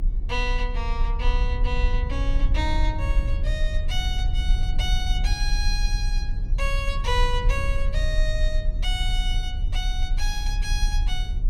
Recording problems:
low-frequency rumble; below 52 Hz, strongest tone 32 Hz, SNR -4 dB

